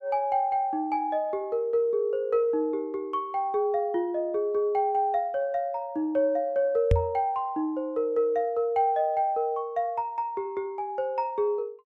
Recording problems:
microphone bump; at 7 s; peak +7 dB vs average level

